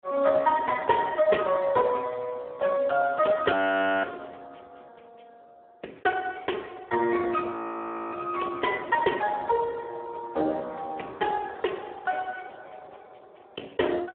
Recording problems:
telephone audio; 280 Hz to 2.5 kHz, Speex
audio freezing; at 3.5 s for 0.5 s and at 7.5 s for 0.5 s

